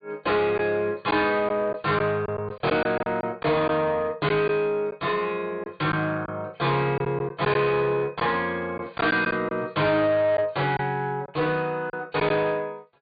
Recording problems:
treble missing; nothing above 4.7 kHz
distortion; soft clipping, signal-to-distortion ratio 11 dB
lost packets; 5% of the sound replaced, filled with silence

